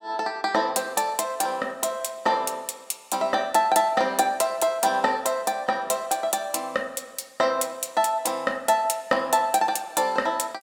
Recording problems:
none

